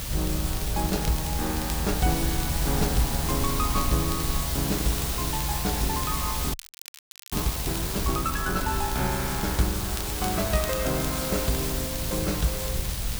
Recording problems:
hiss; slope 0 dB per octave, SNR 1 dB
low-frequency rumble; below 78 Hz, SNR 4 dB
wind on the microphone; below 370 Hz, SNR 20 dB
crackling; vinyl, SNR 13 dB
frozen audio; at 6.5 s for 1 s

